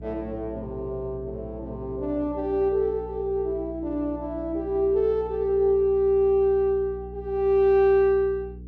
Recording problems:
hum; 60 Hz, harmonics up to 480 Hz, SNR 17 dB

